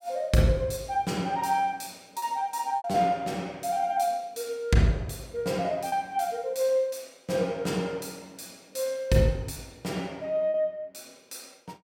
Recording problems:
lost packets; 2% of the sound replaced, filled with repeated pitch periods

